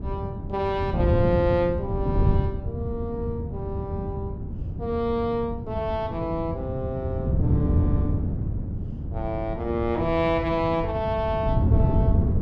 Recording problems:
wind noise; below 160 Hz, SNR 0 dB

